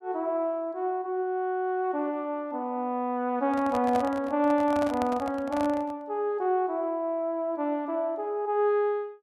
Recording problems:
microphone handling noise; from 3.5 to 6 s; peak -2 dB vs average level

